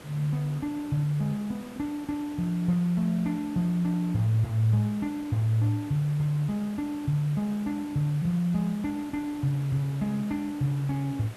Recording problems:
hiss; slope -5 dB per octave, SNR 18 dB

